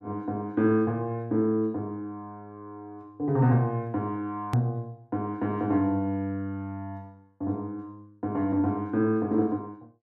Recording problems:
click at an edit; at 4.5 s

